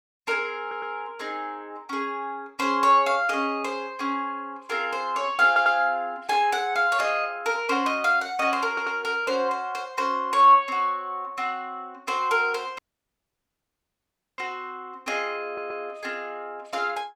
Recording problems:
stutter; 4 times, first at 0.5 s
audio cutting out; at 13 s for 1.5 s

